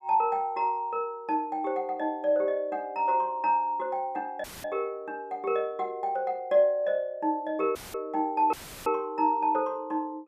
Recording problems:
audio cutting out; at 4.5 s, at 8 s and at 8.5 s; filled with static

